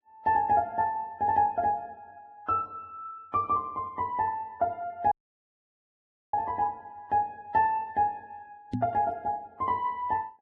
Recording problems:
lossy codec; Vorbis, log-spectral distance 2 dB
audio cutting out; at 5 s for 1 s
microphone bump; at 8.5 s; peak +1 dB vs average level

